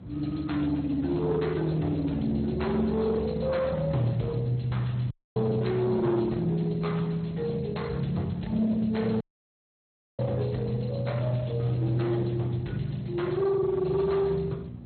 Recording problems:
lossy codec; Speex, then MP2, log-spectral distance 5 dB, nothing above 4.2 kHz
distorted audio; soft clipping, signal-to-distortion ratio 12 dB
mains hum; 60 Hz, harmonics up to 540 Hz, SNR 17 dB
low-frequency rumble; below 320 Hz, SNR 15 dB
audio cutting out; at 5 s and at 9 s for 1 s

